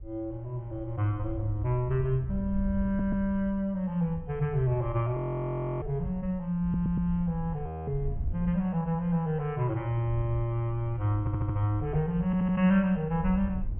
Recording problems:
treble missing; nothing above 3.2 kHz
wind noise; below 82 Hz, SNR 11 dB
audio stuttering; 4 times, first at 3 s
audio freezing; at 5 s for 0.5 s and at 7.5 s

